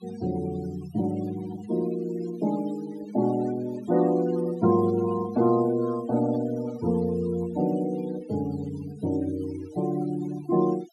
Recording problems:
denoising artefacts; signal-to-artefact ratio 19 dB

